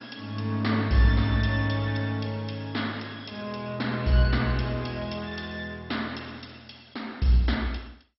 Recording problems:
codec artefacts; MP2, log-spectral distance 6 dB, nothing above 5.5 kHz

